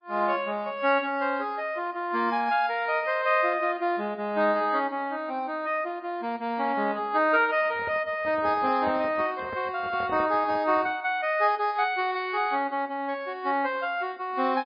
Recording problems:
lossy codec; MP3, log-spectral distance 2 dB, nothing above 5 kHz
handling noise; from 7.5 to 11 s; peak -6 dB vs average level

